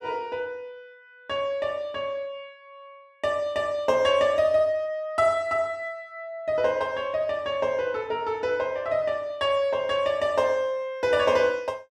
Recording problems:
none

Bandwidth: 12.5 kHz